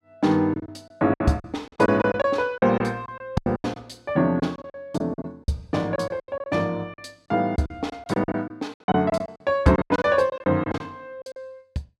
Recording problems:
lost packets; 15% of the sound replaced, filled with silence

